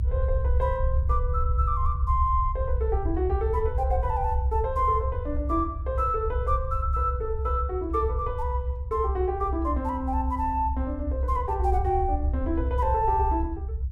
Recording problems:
low-frequency rumble; below 74 Hz, strongest tone 64 Hz, SNR 1 dB

